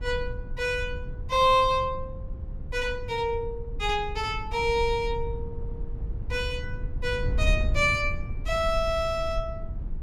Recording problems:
wind noise; below 78 Hz, SNR 7 dB

